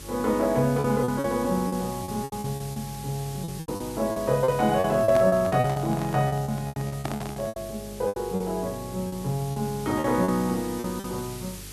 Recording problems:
electrical hum; 50 Hz, harmonics up to 450 Hz, SNR 18 dB
hiss; slope +2 dB per octave, SNR 16 dB
packet loss; 14% of the sound replaced, filled with repeated pitch periods
microphone handling noise; from 4.5 to 7.5 s; peak -1 dB vs average level

